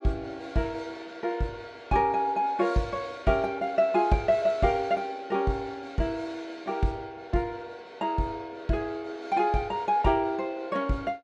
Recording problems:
none

